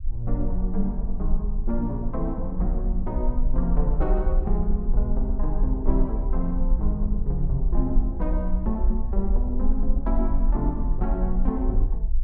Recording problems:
rumble; below 44 Hz, strongest tone 22 Hz, SNR -2 dB

